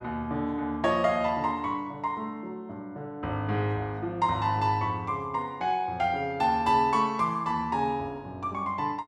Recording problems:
none

